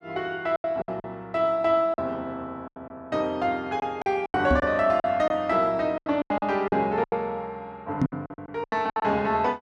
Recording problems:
lost packets; 12% of the sound replaced, filled with silence
microphone thump; at 4.5 s and at 8 s; peak +5 dB vs average level

